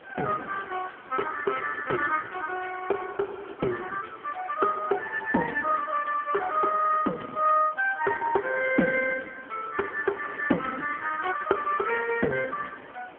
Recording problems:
telephone audio; 220 Hz to 3.1 kHz, AMR-NB
hiss; SNR 28 dB
wind noise; below 1.5 kHz, SNR 21 dB

